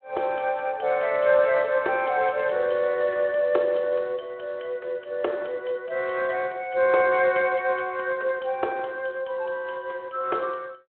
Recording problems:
telephone audio; 320 Hz to 3.3 kHz, Speex

